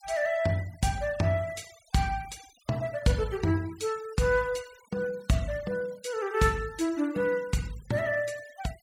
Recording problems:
denoising artefacts; signal-to-artefact ratio 21 dB

